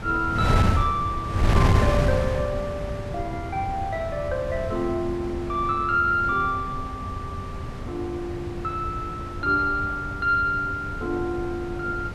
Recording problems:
wind noise; below 230 Hz, SNR 3 dB

